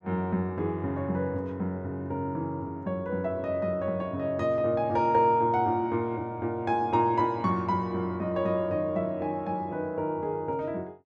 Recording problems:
none

